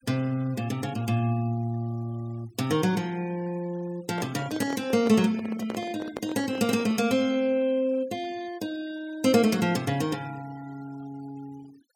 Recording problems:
noise reduction artefacts; signal-to-artefact ratio 23 dB
handling noise; from 4 to 7 s; peak -3 dB vs average level

